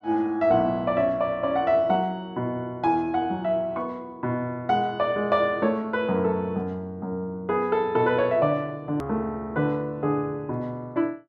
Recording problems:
click at an edit; at 9 s

